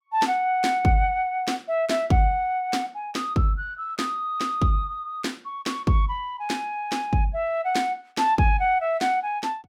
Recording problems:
none

